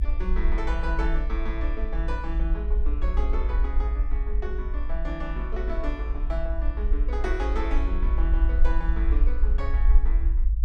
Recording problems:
low-frequency rumble; below 52 Hz, SNR -7 dB

